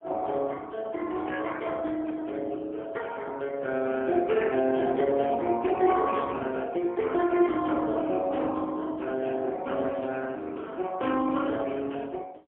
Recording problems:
telephone audio; 280 Hz to 2.6 kHz, AMR-NB, then MP3
static burst; at 4 s and at 10 s; peak -19 dB vs average level

